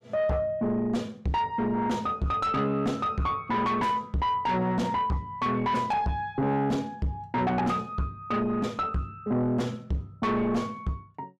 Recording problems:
distortion; soft clipping, signal-to-distortion ratio 7 dB

